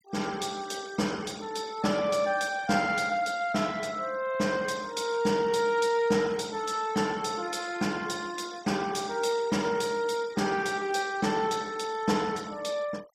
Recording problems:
noise reduction artefacts; signal-to-artefact ratio 21 dB

